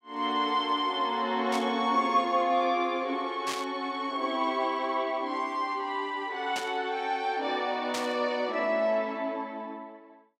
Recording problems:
burst of static; 4 times, first at 1.5 s; peak -2 dB vs average level

